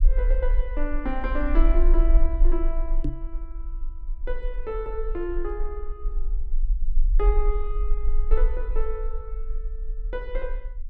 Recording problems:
rumble; below 38 Hz, strongest tone 20 Hz, SNR -5 dB
microphone bump; at 3 s; peak +7 dB vs average level

